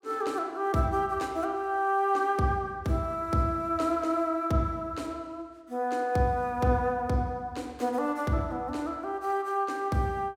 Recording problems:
none

